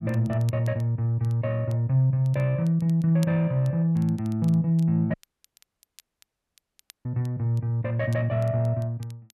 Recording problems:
crackle; vinyl, SNR 29 dB
dropout; at 5 s for 2 s

